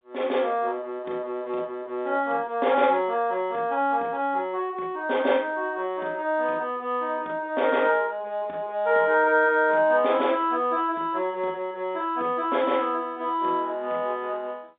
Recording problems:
phone line; 260 Hz to 3.7 kHz, G.711

